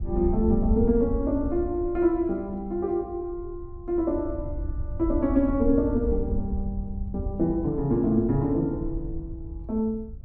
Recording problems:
wind on the microphone; below 80 Hz, SNR 8 dB

